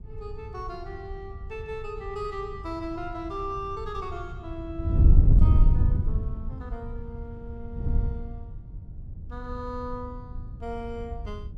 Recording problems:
wind on the microphone; below 94 Hz, SNR -11 dB

